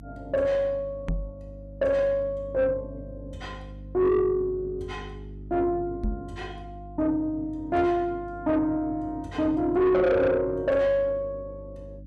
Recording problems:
distortion; soft clipping, signal-to-distortion ratio 11 dB
hum; 50 Hz, harmonics up to 300 Hz, SNR 17 dB
microphone bump; at 1 s and at 6 s; peak 0 dB vs average level

